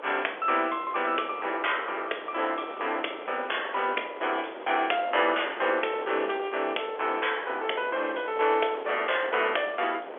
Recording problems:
telephone audio; 340 Hz to 3.4 kHz, G.711
wind noise; below 1.1 kHz, SNR 12 dB

